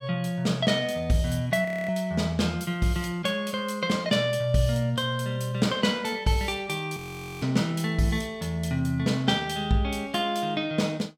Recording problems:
frozen audio; at 1.5 s and at 7 s

